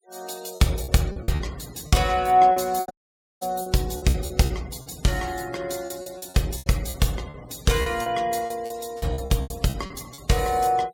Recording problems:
denoising artefacts; signal-to-artefact ratio 21 dB
lost packets; 14% of the sound replaced, filled with repeated pitch periods
dropout; at 3 s for 0.5 s

